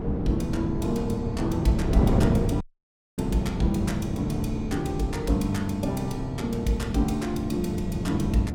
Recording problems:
wind on the microphone; below 280 Hz, SNR 2 dB
dropout; at 2.5 s for 0.5 s

